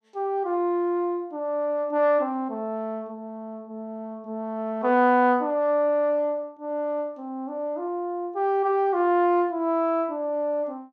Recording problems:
none

